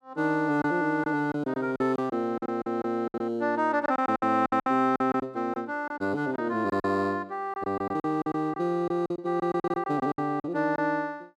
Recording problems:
lost packets; 12% of the sound replaced, filled with silence

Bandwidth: 14 kHz